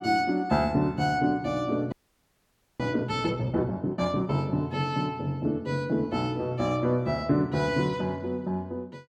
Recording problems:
frozen audio; at 2 s for 1 s

